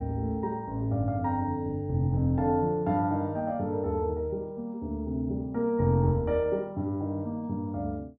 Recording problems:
none

